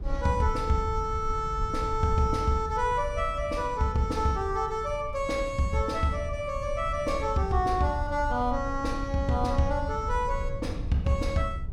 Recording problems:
rumble; below 78 Hz, SNR 8 dB

